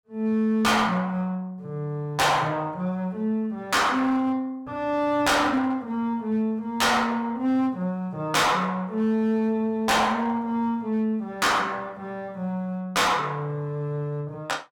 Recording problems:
distorted audio; hard clipping, signal-to-distortion ratio 8 dB

